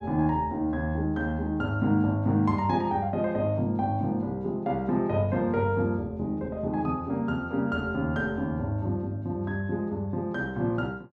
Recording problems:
none

